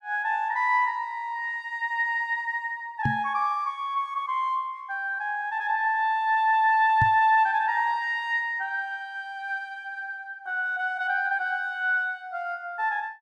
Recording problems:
microphone thump; at 3 s and at 7 s; peak +2 dB vs average level

